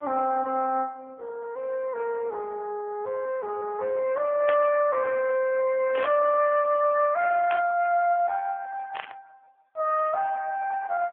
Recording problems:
phone line; 280 Hz to 3.1 kHz, AMR-NB
static burst; 4 times, first at 4.5 s; peak -4 dB vs average level

